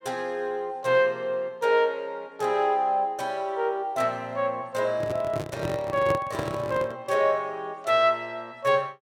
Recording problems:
microphone handling noise; from 5 to 7 s; peak -1 dB vs average level

